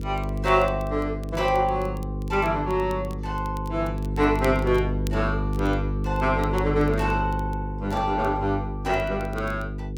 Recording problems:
hum; 50 Hz, harmonics up to 500 Hz, SNR 4 dB
crackling; vinyl, SNR 25 dB

